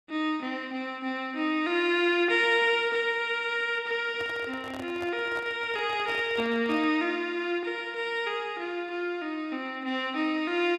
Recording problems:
microphone handling noise; from 4 to 7 s; peak -9 dB vs average level

